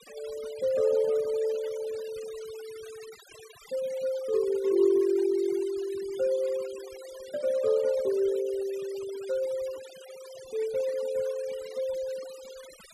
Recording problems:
denoising artefacts; signal-to-artefact ratio 19 dB

